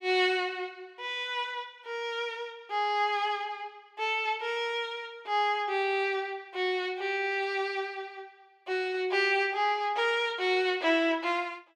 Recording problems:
none

